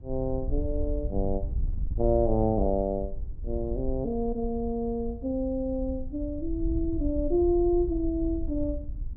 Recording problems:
wind noise; below 64 Hz, SNR 7 dB

